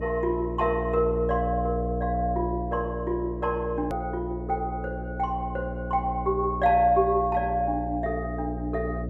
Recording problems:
hum; 60 Hz, harmonics up to 660 Hz, SNR 7 dB
hard cut with a click; at 4 s

